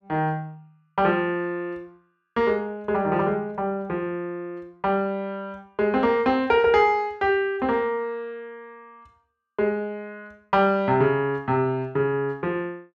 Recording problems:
none

